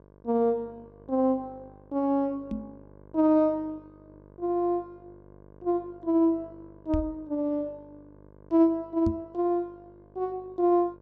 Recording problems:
electrical hum; 50 Hz, harmonics up to 1.2 kHz, SNR 26 dB
knock on the microphone; at 2.5 s, at 7 s and at 9 s; peak 0 dB vs average level

